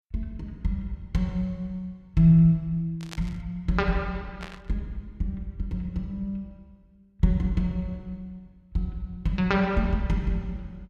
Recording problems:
static burst; at 3 s and at 4.5 s; peak -7 dB vs average level

